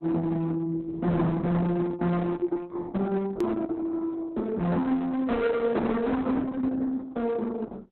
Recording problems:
lossy compression; Opus, log-spectral distance 2 dB, nothing above 13.1 kHz
distorted audio; hard clipping, signal-to-distortion ratio 8 dB
click at an edit; at 3.5 s

